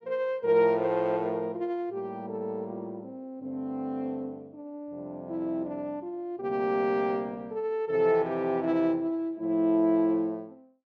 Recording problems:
none

